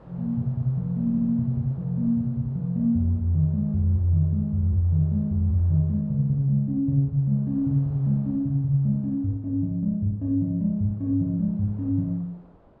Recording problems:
wind noise; below 680 Hz, SNR 29 dB
audio stuttering; at 1 s

